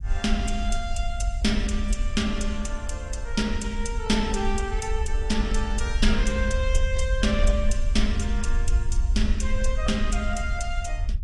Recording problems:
lossy codec; AAC, log-spectral distance 2 dB
low-frequency rumble; below 58 Hz, SNR 0 dB

